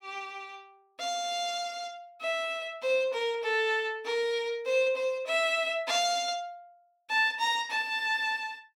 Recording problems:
none

